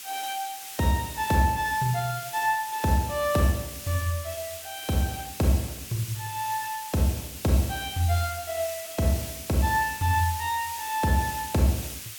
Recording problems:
hiss; SNR 10 dB

